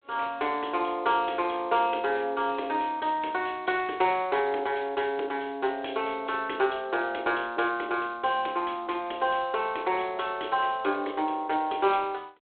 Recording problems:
telephone audio; 280 Hz to 3.4 kHz, G.726

